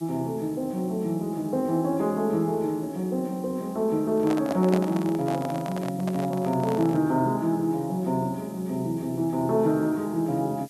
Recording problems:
background hiss; SNR 24 dB
handling noise; from 4 to 7 s; peak -1 dB vs average level

